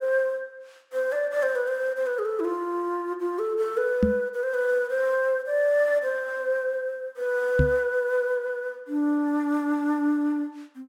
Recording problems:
microphone bump; at 4 s and at 7.5 s; peak +7 dB vs average level

